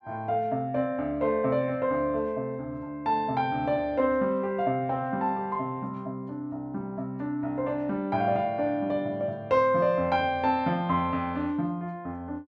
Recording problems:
none

